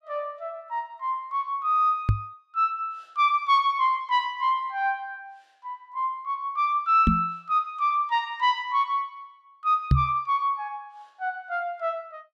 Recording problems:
microphone bump; at 2 s, at 7 s and at 10 s; peak +9 dB vs average level

